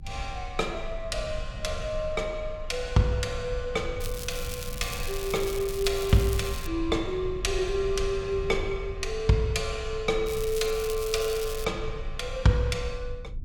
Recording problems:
rumble; below 70 Hz, strongest tone 22 Hz, SNR 10 dB
crackle; from 4 to 6.5 s and from 10 to 12 s; loose cable, SNR 10 dB

